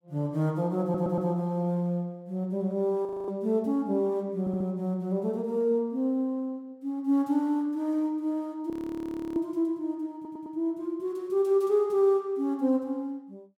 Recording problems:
audio stuttering; at 1 s, at 4.5 s and at 10 s
audio freezing; at 3 s and at 8.5 s for 0.5 s

